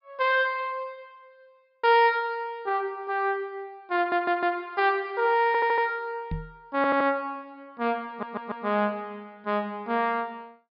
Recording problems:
treble missing; nothing above 5.5 kHz
audio stuttering; 4 times, first at 4 s
microphone thump; at 6.5 s; peak -2 dB vs average level

